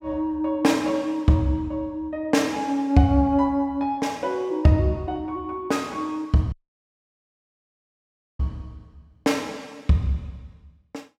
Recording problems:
dropout; at 6.5 s for 2 s

